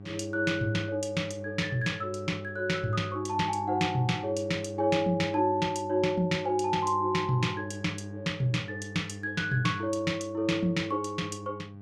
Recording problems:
electrical hum; 50 Hz, harmonics up to 800 Hz, SNR 13 dB

